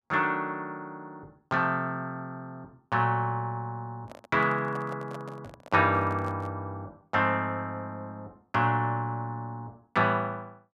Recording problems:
microphone handling noise; from 4 to 6.5 s; peak -10 dB vs average level

